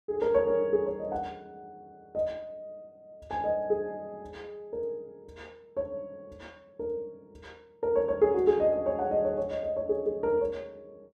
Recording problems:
none

